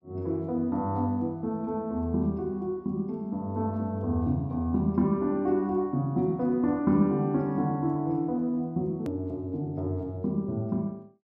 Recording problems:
click at an edit; at 9 s

